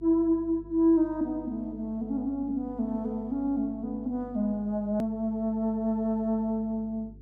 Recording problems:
electrical hum; 50 Hz, harmonics up to 450 Hz, SNR 21 dB
click at an edit; at 5 s

